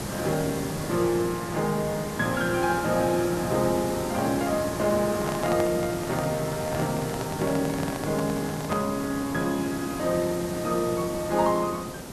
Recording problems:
background hiss; SNR 7 dB
microphone handling noise; from 5 to 9 s; peak 0 dB vs average level

